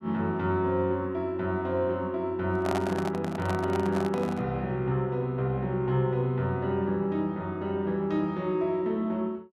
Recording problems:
handling noise; from 2.5 to 4.5 s; peak +1 dB vs average level

